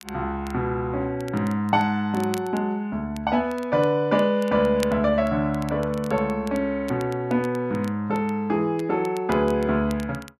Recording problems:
crackle; vinyl, SNR 22 dB

